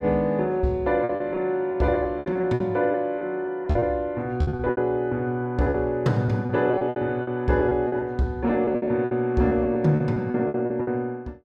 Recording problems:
packet loss; 14% of the sound replaced, filled with repeated pitch periods

